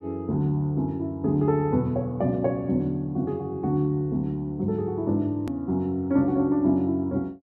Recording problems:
click at an edit; at 5.5 s

